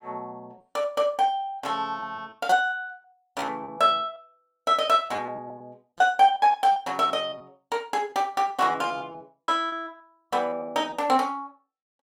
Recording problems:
lost packets; 11% of the sound replaced, filled with repeated pitch periods

